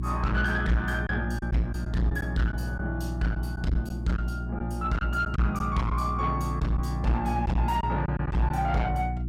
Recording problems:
distorted audio; soft clipping, signal-to-distortion ratio 6 dB
hum; 60 Hz, harmonics up to 360 Hz, SNR 3 dB
lost packets; 4% of the sound replaced, filled with silence

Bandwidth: 16.5 kHz